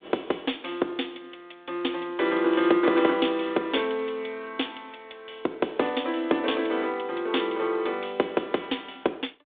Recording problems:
phone line; 260 Hz to 3.6 kHz, G.726

